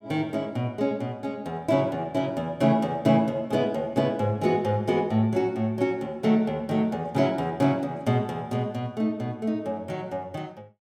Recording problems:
none

